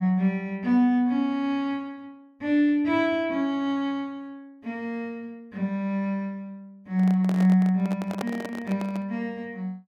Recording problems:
microphone handling noise; from 7 to 9 s; peak -3 dB vs average level

